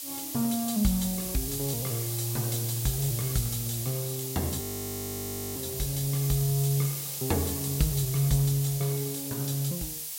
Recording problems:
hiss; SNR 3 dB
crackle; at 2.5 s; loose cable, SNR 21 dB
frozen audio; at 4.5 s for 1 s

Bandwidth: 16 kHz